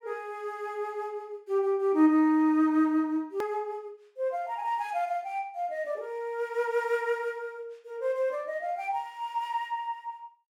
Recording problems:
edit click; at 3.5 s

